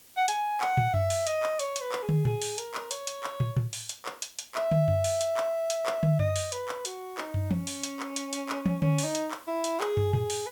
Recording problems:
hiss; SNR 24 dB

